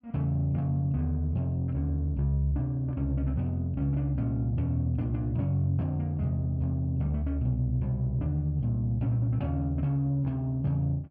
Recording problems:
none

